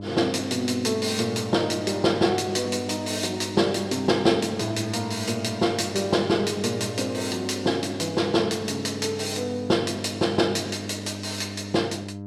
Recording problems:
hum; 50 Hz, harmonics up to 1 kHz, SNR 11 dB

